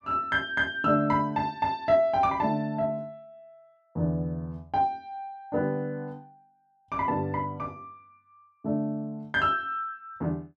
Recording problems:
none

